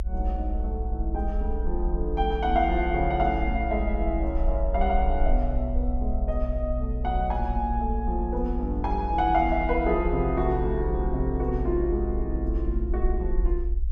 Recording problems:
rumble; below 60 Hz, SNR 2 dB

